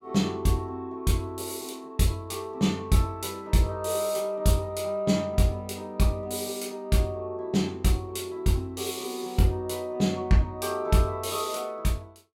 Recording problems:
none

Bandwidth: 16.5 kHz